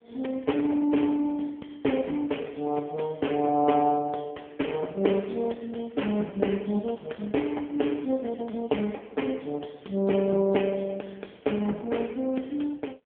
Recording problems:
phone line; 240 Hz to 3.5 kHz, AMR-NB

